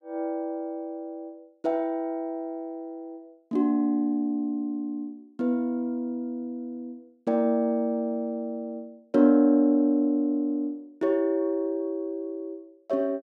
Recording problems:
none

